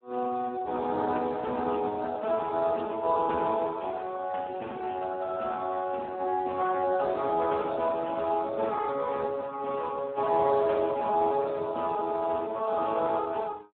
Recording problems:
phone line; 260 Hz to 2.7 kHz, Speex

